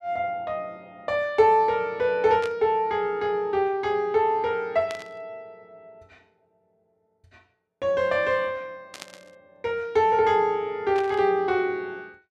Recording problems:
static burst; 4 times, first at 2.5 s; peak -9 dB vs average level

